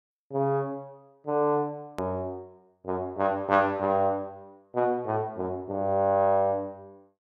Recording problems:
hard cut with a click; at 2 s

